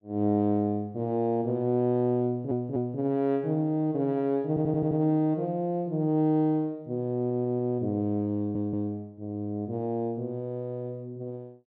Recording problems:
stutter; 4 times, first at 2.5 s

